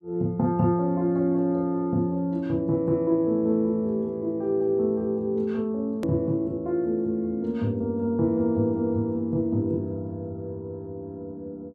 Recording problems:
edit click; at 6 s

